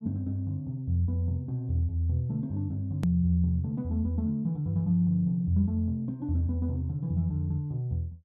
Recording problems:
hard cut with a click; at 3 s

